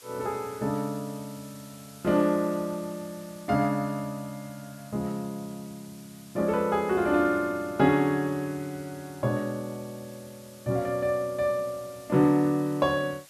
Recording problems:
hiss; slope +1 dB per octave, SNR 22 dB

